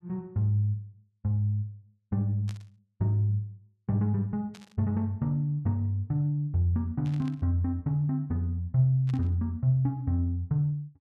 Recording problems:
burst of static; 4 times, first at 2.5 s; peak -14 dB vs average level

